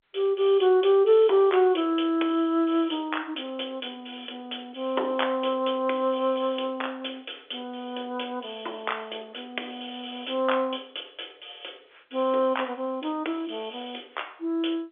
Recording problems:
telephone audio; 280 Hz to 3.6 kHz, G.711

